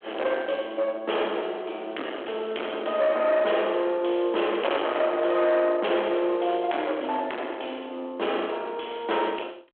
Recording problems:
telephone audio; 280 Hz to 3.4 kHz, G.726
distortion; hard clipping, uneven, signal-to-distortion ratio 7 dB

